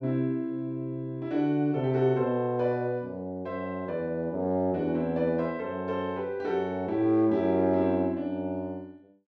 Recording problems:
none

